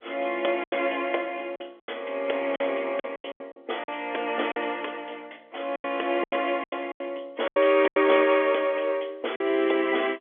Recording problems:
phone line; 260 Hz to 3.5 kHz, G.711
lost packets; 10% of the sound replaced, filled with silence

